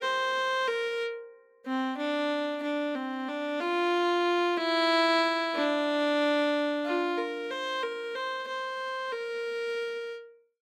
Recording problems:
none

